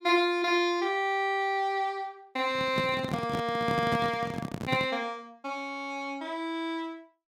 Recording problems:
handling noise; from 2.5 to 5 s; peak +2 dB vs average level

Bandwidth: 16.5 kHz